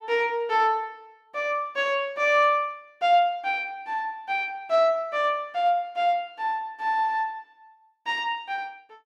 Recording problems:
none

